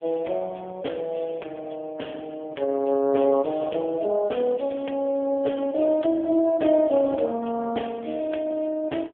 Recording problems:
telephone audio; 240 Hz to 3.4 kHz, AMR-NB

